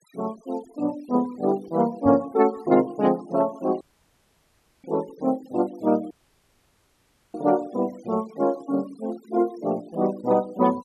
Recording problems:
denoising artefacts; signal-to-artefact ratio 24 dB
microphone thump; at 2 s; peak -1 dB vs average level
audio cutting out; at 4 s for 1 s and at 6 s for 1 s

